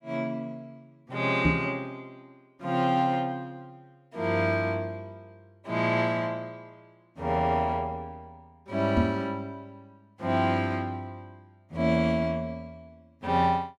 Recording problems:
microphone thump; at 1.5 s and at 9 s; peak +7 dB vs average level

